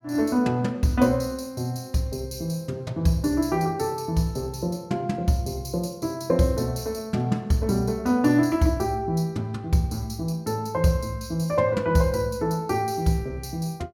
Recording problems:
none

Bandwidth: 18 kHz